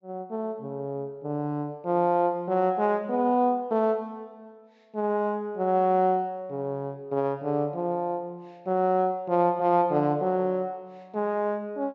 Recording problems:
treble missing; nothing above 8 kHz

